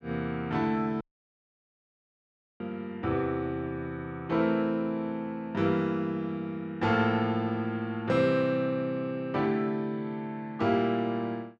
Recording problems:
audio cutting out; at 1 s for 1.5 s

